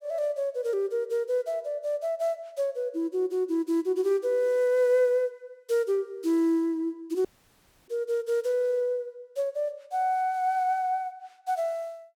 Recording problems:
audio cutting out; at 7.5 s for 0.5 s

